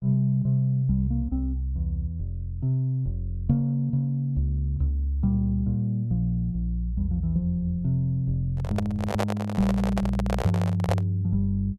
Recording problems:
microphone handling noise; from 8.5 to 11 s; peak +3 dB vs average level

